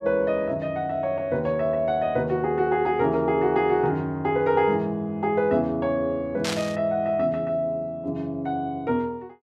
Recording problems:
burst of static; at 6.5 s; peak 0 dB vs average level

